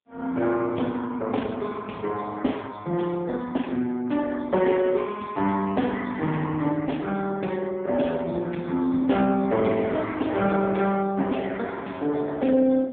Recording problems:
phone line; 130 Hz to 3.5 kHz, AMR-NB

